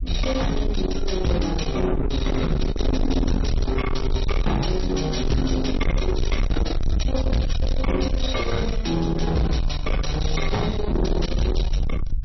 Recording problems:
lossy codec; MP3, log-spectral distance 2 dB, nothing above 5.8 kHz
distorted audio; soft clipping, signal-to-distortion ratio 6 dB
rumble; below 86 Hz, SNR 2 dB

